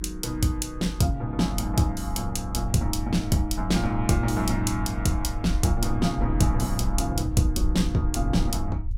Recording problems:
low-frequency rumble; below 62 Hz, SNR 6 dB

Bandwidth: 16 kHz